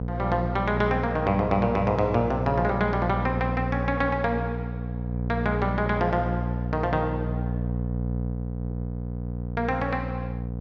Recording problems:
mains hum; 60 Hz, harmonics up to 720 Hz, SNR 4 dB

